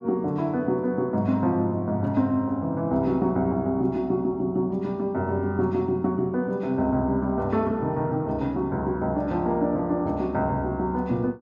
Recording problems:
none

